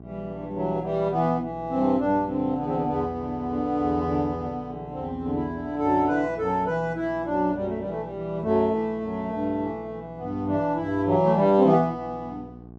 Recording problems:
mains hum; 60 Hz, harmonics up to 1.1 kHz, SNR 19 dB

